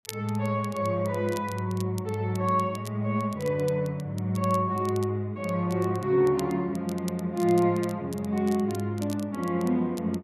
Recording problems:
crackling; vinyl, SNR 20 dB

